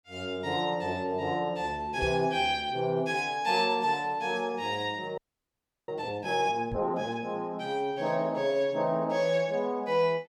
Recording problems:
knock on the microphone; at 2 s and at 6.5 s; peak -4 dB vs average level
audio freezing; at 5 s for 0.5 s

